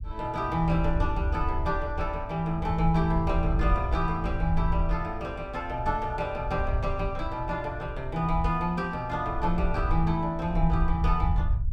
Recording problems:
low-frequency rumble; below 76 Hz, SNR 3 dB

